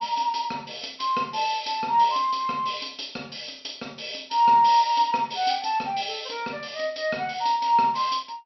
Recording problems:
treble missing; nothing above 5.8 kHz

